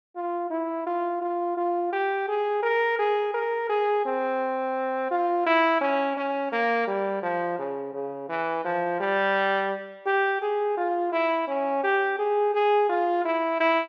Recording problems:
none

